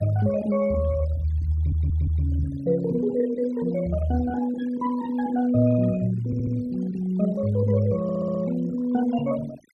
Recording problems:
denoising artefacts; signal-to-artefact ratio 22 dB
stutter; at 1.5 s, at 6.5 s and at 8 s

